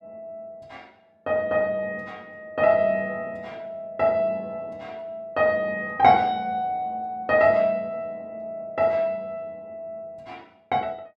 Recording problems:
none

